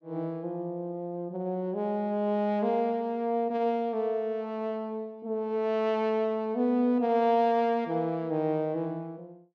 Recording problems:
none

